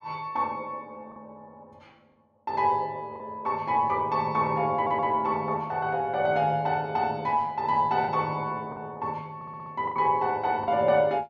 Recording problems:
lost packets; 3% of the sound replaced, filled with the last packet
audio stuttering; at 5 s and at 9.5 s

